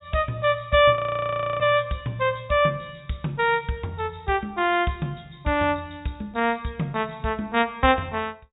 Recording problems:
low-pass filter; nothing above 4 kHz
audio freezing; at 1 s for 0.5 s

